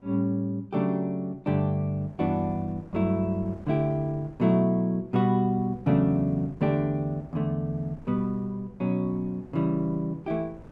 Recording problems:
wind noise; below 350 Hz, SNR 22 dB

